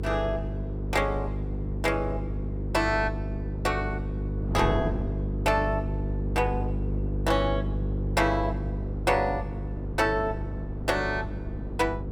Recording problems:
electrical hum; 50 Hz, harmonics up to 500 Hz, SNR 3 dB
wind noise; below 370 Hz, SNR 12 dB

